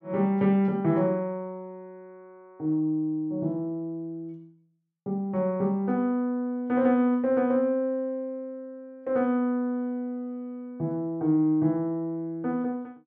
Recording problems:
none

